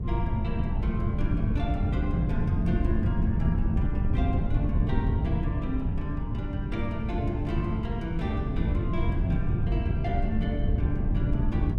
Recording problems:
wind on the microphone; below 130 Hz, SNR -5 dB

